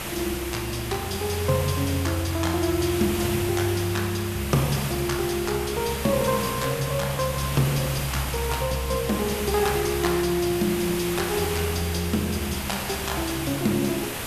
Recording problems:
hiss; slope -3 dB per octave, SNR 6 dB

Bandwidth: 14 kHz